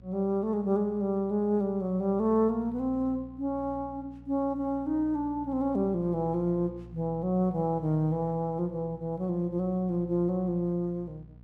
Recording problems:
electrical hum; 60 Hz, harmonics up to 540 Hz, SNR 20 dB

